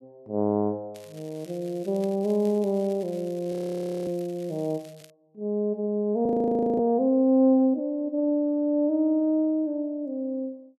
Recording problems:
crackling; from 1 to 5 s; loose cable, SNR 26 dB
audio freezing; at 3.5 s for 0.5 s and at 6.5 s for 0.5 s

